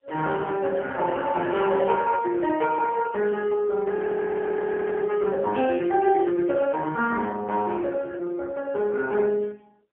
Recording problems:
telephone audio; 220 Hz to 3.2 kHz, AMR-NB, then MP3
audio freezing; at 4 s for 1 s

